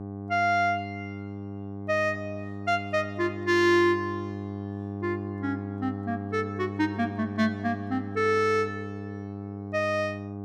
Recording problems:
electrical hum; 50 Hz, harmonics up to 1.1 kHz, SNR 9 dB

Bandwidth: 15.5 kHz